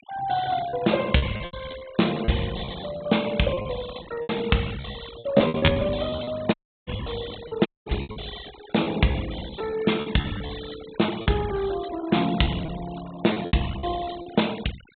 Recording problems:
low-pass filter; nothing above 4 kHz
denoising artefacts; signal-to-artefact ratio 15 dB
lost packets; 12% of the sound replaced, filled with repeated pitch periods
dropout; at 6.5 s and at 7.5 s

